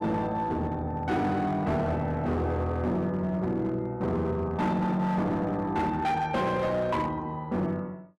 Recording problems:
distorted audio; hard clipping, signal-to-distortion ratio 11 dB

